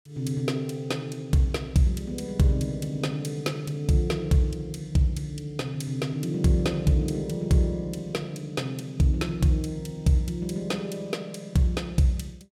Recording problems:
none

